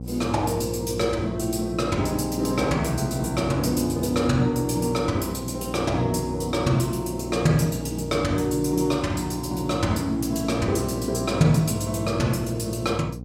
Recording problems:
hum; 60 Hz, harmonics up to 780 Hz, SNR 10 dB

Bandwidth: 16 kHz